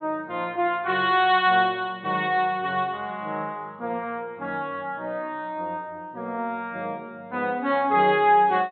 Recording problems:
low-pass filter; nothing above 4.2 kHz

